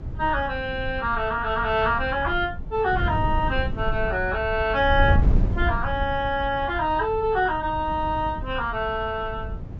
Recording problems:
treble cut off; nothing above 8 kHz
lossy codec; Vorbis, log-spectral distance 2 dB
wind noise; below 100 Hz, SNR 6 dB

